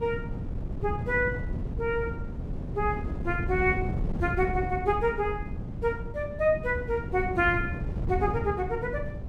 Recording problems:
wind noise; below 180 Hz, SNR 5 dB

